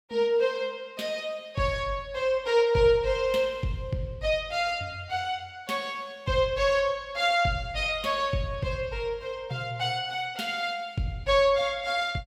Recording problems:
none

